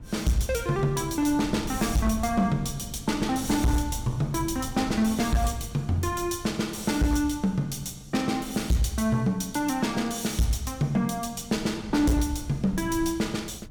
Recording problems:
distortion; hard clipping, signal-to-distortion ratio 11 dB
wind noise; below 130 Hz, SNR 15 dB

